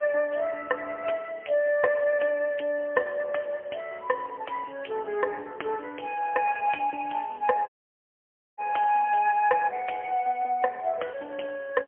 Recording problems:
telephone audio; 370 Hz to 2.8 kHz, AMR-NB, then MP3
dropout; at 7.5 s for 1 s

